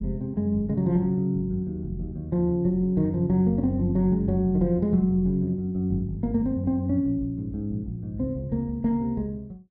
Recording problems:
low-pass filter; nothing above 5.5 kHz

